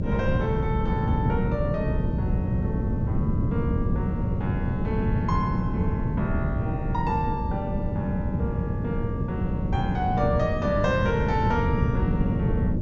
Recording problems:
low-pass filter; nothing above 8 kHz
hum; 60 Hz, harmonics up to 600 Hz, SNR 8 dB
background hiss; slope -7 dB per octave, SNR 29 dB
wind noise; below 190 Hz, SNR -3 dB

